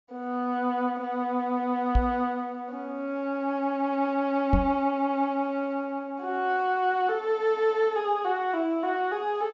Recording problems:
treble cut off; nothing above 8 kHz
microphone thump; at 2 s and at 4.5 s; peak +7 dB vs average level

